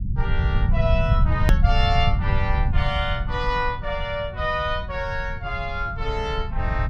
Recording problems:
rumble; below 100 Hz, SNR -1 dB
hard cut with a click; at 1.5 s

